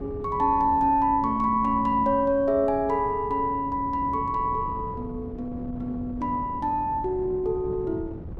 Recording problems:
wind on the microphone; below 260 Hz, SNR 14 dB

